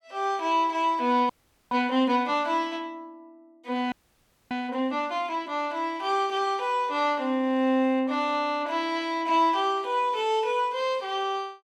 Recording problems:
audio freezing; at 1.5 s and at 4 s for 0.5 s

